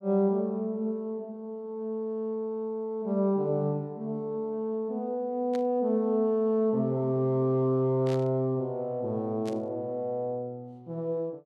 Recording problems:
static burst; at 5.5 s, at 8 s and at 9.5 s; peak -11 dB vs average level

